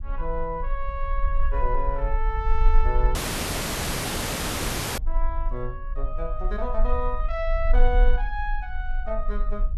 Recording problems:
low-frequency rumble; below 40 Hz, strongest tone 26 Hz, SNR -3 dB
audio cutting out; at 3 s for 2 s

